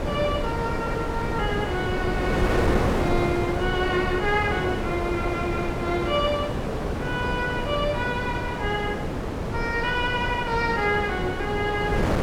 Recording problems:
wind noise; below 640 Hz, SNR 1 dB

